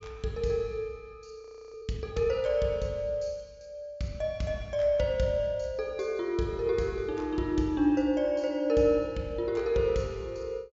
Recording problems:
treble cut off; nothing above 8 kHz
audio freezing; at 1.5 s

